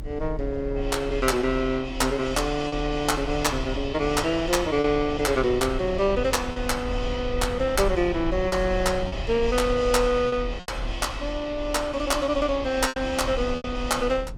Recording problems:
rumble; below 72 Hz, strongest tone 40 Hz, SNR 11 dB
packet loss; 3% of the sound replaced, filled with repeated pitch periods

